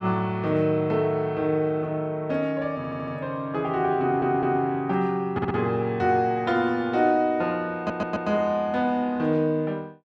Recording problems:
stutter; 4 times, first at 3 s

